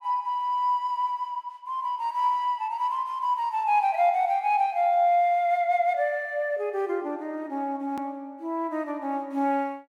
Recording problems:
hard cut with a click; at 8 s

